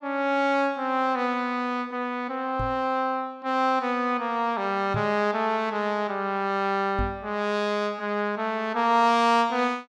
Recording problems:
microphone bump; at 2.5 s, at 5 s and at 7 s; peak -1 dB vs average level

